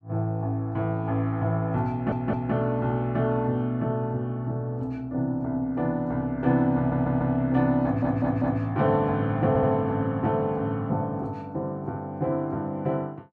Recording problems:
stutter; 4 times, first at 2 s

